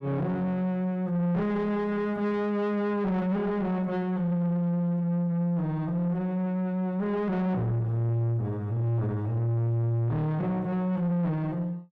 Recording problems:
distortion; soft clipping, signal-to-distortion ratio 10 dB

